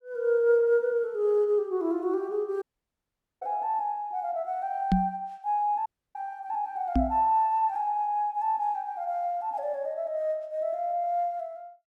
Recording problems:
audio cutting out; at 2.5 s for 1 s and at 6 s
knock on the microphone; at 5 s and at 7 s; peak +7 dB vs average level

